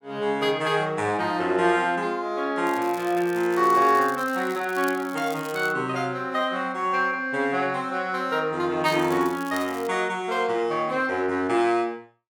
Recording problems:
crackling; from 2.5 to 5.5 s and from 9 to 10 s; loose cable, SNR 20 dB

